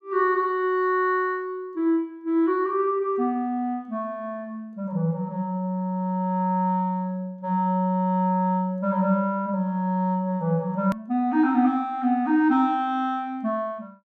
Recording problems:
hard cut with a click; at 11 s

